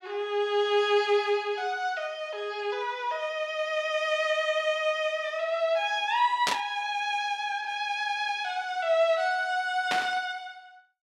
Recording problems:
burst of static; at 6.5 s and at 10 s; peak +4 dB vs average level

